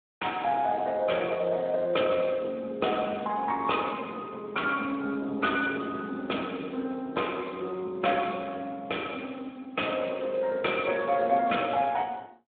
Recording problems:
phone line; 220 Hz to 3.6 kHz, Speex

